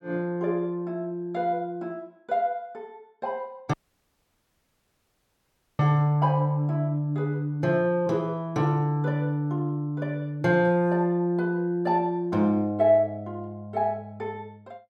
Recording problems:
dropout; at 3.5 s for 2 s

